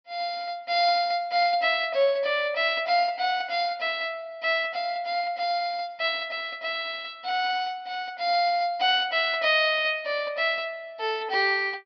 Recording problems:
low-pass filter; nothing above 5.5 kHz

